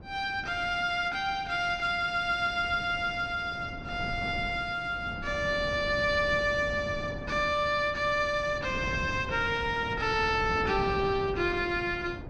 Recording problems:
wind on the microphone; below 310 Hz, SNR 12 dB

